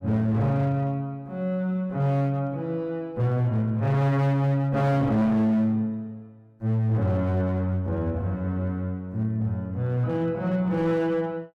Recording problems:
distorted audio; hard clipping, signal-to-distortion ratio 11 dB

